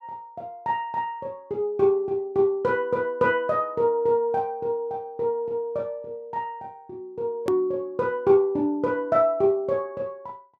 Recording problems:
edit click; at 7.5 s

